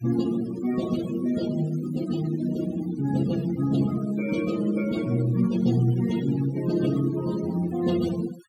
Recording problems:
noise reduction artefacts; signal-to-artefact ratio 14 dB

